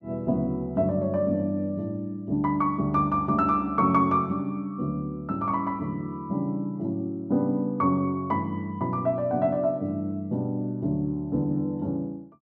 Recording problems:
none

